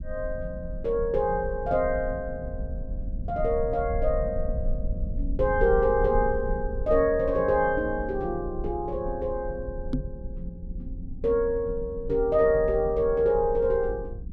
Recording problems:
low-frequency rumble; below 66 Hz, SNR 10 dB
microphone bump; at 10 s; peak +2 dB vs average level

